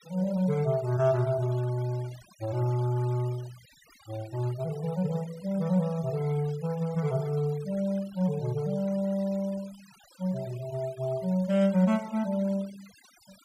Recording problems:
noise reduction artefacts; signal-to-artefact ratio 22 dB

